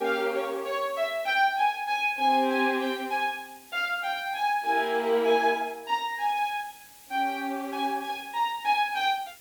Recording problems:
background hiss; SNR 23 dB

